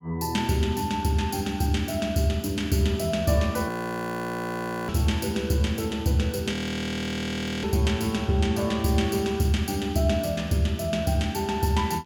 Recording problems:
audio freezing; at 3.5 s for 1 s and at 6.5 s for 1 s

